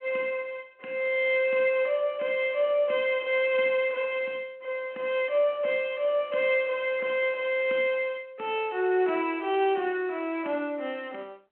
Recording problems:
telephone audio; 220 Hz to 3.5 kHz, G.726

